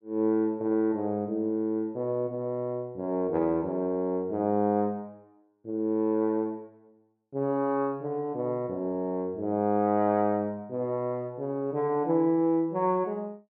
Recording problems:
none

